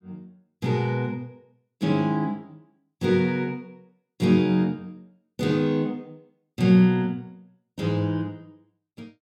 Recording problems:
none

